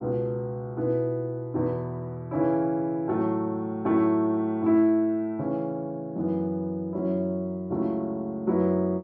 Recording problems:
low-pass filter; nothing above 7.5 kHz

